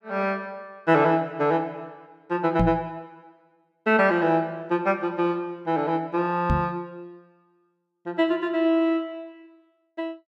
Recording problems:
microphone bump; at 2.5 s and at 6.5 s; peak +4 dB vs average level

